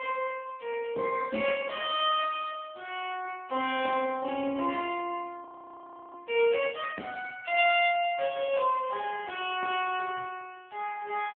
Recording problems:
phone line; 240 Hz to 3.3 kHz, AMR-NB
frozen audio; at 5.5 s for 0.5 s

